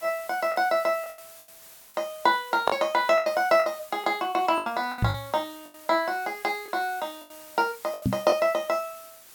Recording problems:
background hiss; slope 0 dB per octave, SNR 20 dB
packet loss; 10% of the sound replaced, filled with the last packet
knock on the microphone; at 5 s and at 8 s; peak +5 dB vs average level

